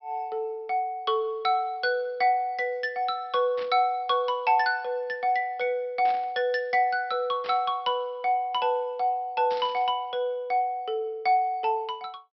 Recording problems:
low-pass filter; nothing above 5.6 kHz
burst of static; 4 times, first at 3.5 s; peak -10 dB vs average level

